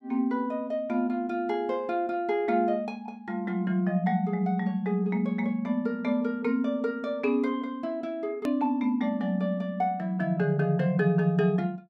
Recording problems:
click at an edit; at 8.5 s

